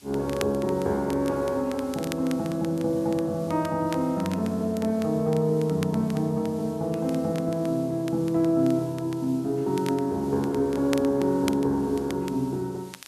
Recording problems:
background hiss; slope 0 dB per octave, SNR 25 dB
crackle; vinyl, SNR 18 dB

